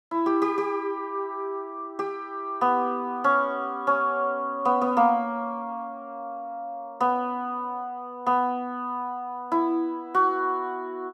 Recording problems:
none

